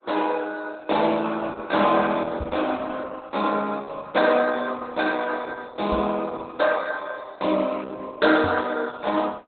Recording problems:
codec artefacts; Opus, log-spectral distance 4 dB, nothing above 4 kHz
microphone thump; at 2.5 s, at 6 s and at 8.5 s; peak -1 dB vs average level

